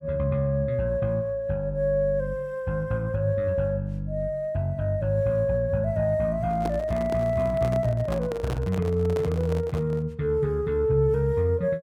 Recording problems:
microphone handling noise; from 6.5 to 10 s; peak -4 dB vs average level

